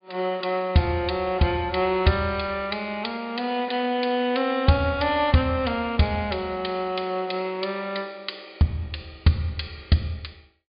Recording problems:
treble missing; nothing above 4.9 kHz

